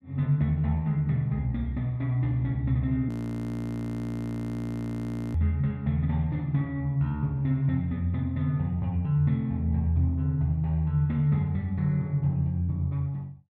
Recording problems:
audio freezing; at 3 s for 2.5 s

